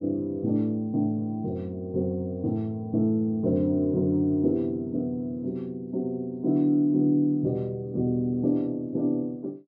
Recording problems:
none

